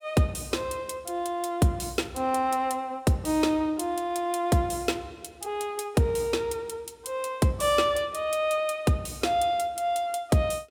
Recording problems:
none

